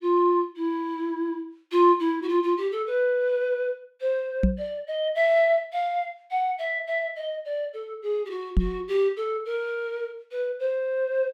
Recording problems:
knock on the microphone; at 4.5 s and at 8.5 s; peak +8 dB vs average level

